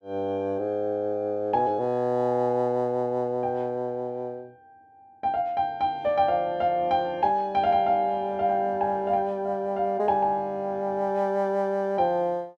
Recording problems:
none

